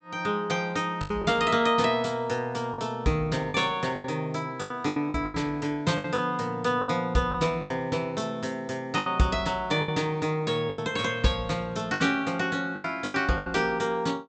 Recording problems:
treble cut off; nothing above 8 kHz
lost packets; 9% of the sound replaced, filled with the last packet

